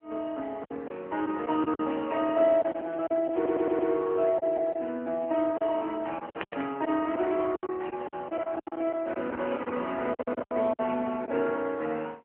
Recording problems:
phone line; 220 Hz to 3.2 kHz, AMR-NB
lost packets; 11% of the sound replaced, filled with silence
stutter; at 3.5 s
burst of static; at 6.5 s; peak -9 dB vs average level

